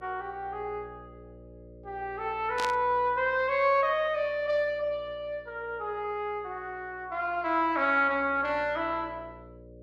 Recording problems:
hum; 60 Hz, harmonics up to 600 Hz, SNR 23 dB
static burst; at 2.5 s; peak -2 dB vs average level

